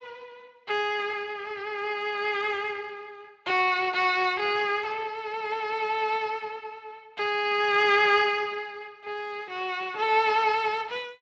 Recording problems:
lossy compression; Speex, log-spectral distance 4 dB

